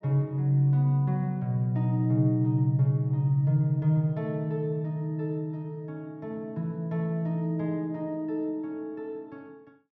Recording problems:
low-pass filter; nothing above 8 kHz

